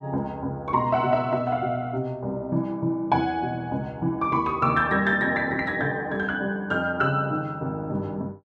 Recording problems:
none

